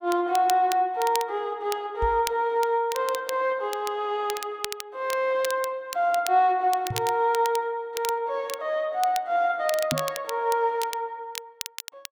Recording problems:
crackle; vinyl, SNR 12 dB
knock on the microphone; at 2 s, at 7 s and at 10 s; peak -2 dB vs average level

